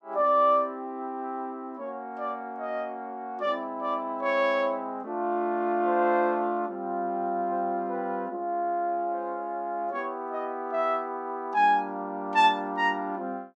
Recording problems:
none

